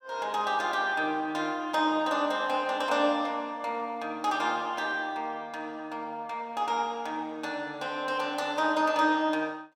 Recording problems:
none

